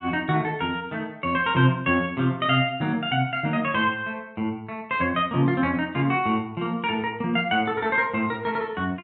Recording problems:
treble cut off; nothing above 4.2 kHz

